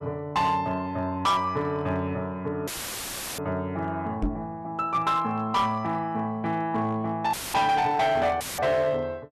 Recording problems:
distorted audio; hard clipping, signal-to-distortion ratio 10 dB
dropout; at 2.5 s for 0.5 s, at 7.5 s and at 8.5 s; filled with static
knock on the microphone; at 4 s; peak +3 dB vs average level

